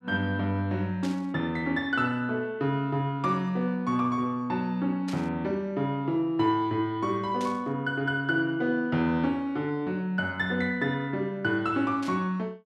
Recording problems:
burst of static; 4 times, first at 1 s; peak -9 dB vs average level

